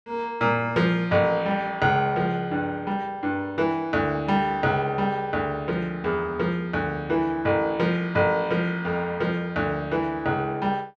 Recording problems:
none

